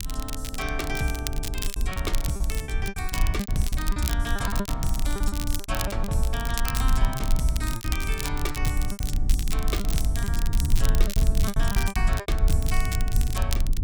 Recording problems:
rumble; below 62 Hz, SNR -4 dB
crackle; vinyl, SNR 4 dB
packet loss; 12% of the sound replaced, filled with repeated pitch periods

